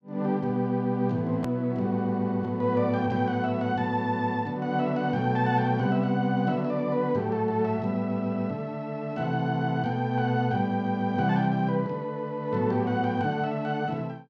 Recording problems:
edit click; at 1.5 s

